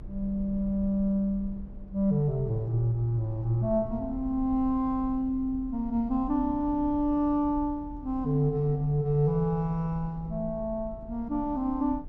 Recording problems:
low-frequency rumble; below 74 Hz, SNR 15 dB

